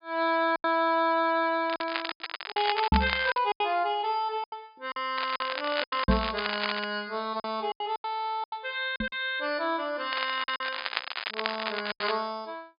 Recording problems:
low-pass filter; nothing above 5 kHz
packet loss; 10% of the sound replaced, filled with silence
crackle; from 1.5 to 3.5 s, from 5 to 7 s and from 10 to 12 s; loose cable, SNR 5 dB
microphone bump; at 3 s, at 6 s and at 9 s; peak +8 dB vs average level

